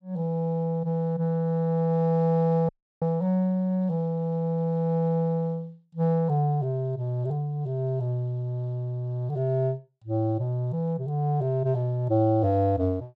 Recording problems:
audio cutting out; at 2.5 s

